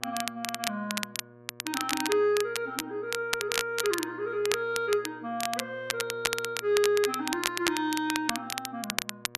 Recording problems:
mains hum; 60 Hz, harmonics up to 1.8 kHz, SNR 21 dB
crackling; vinyl, SNR 3 dB

